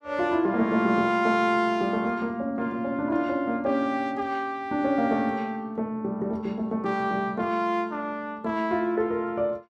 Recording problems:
none

